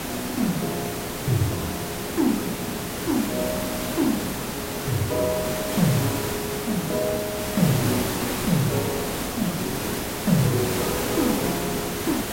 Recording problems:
background hiss; slope -4 dB per octave, SNR 1 dB

